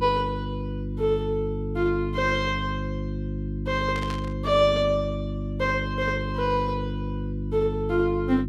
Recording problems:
electrical hum; 50 Hz, harmonics up to 350 Hz, SNR 5 dB
burst of static; at 4 s; peak -8 dB vs average level

